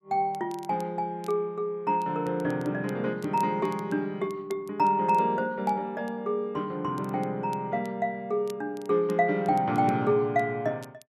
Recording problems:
crackle; vinyl, SNR 27 dB

